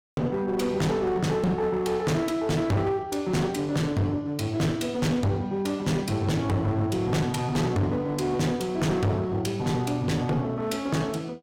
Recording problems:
distorted audio; hard clipping, uneven, signal-to-distortion ratio 6 dB

